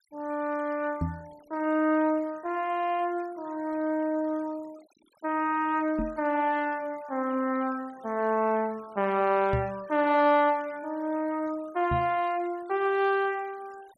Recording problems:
noise reduction artefacts; signal-to-artefact ratio 26 dB
microphone thump; 4 times, first at 1 s; peak +2 dB vs average level

